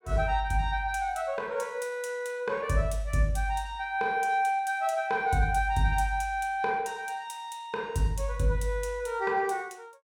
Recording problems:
none

